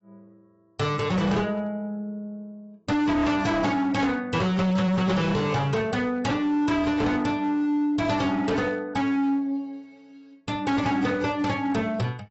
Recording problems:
lossy compression; AAC, log-spectral distance 2 dB, nothing above 7.8 kHz
distorted audio; hard clipping, signal-to-distortion ratio 7 dB

